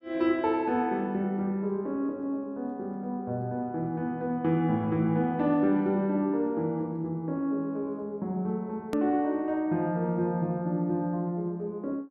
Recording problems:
edit click; at 9 s

